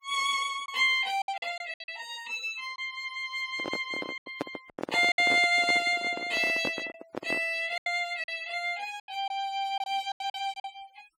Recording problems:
noise reduction artefacts; signal-to-artefact ratio 22 dB
lost packets; 8% of the sound replaced, filled with silence
handling noise; from 3.5 to 7.5 s; peak 0 dB vs average level

